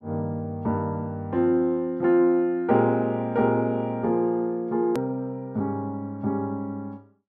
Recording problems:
click at an edit; at 5 s

